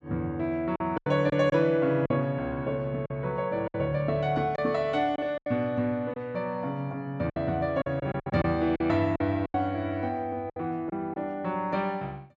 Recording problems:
lost packets; 8% of the sound replaced, filled with silence

